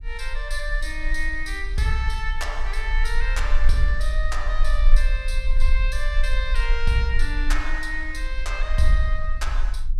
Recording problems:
rumble; below 38 Hz, strongest tone 18 Hz, SNR -1 dB

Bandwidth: 15.5 kHz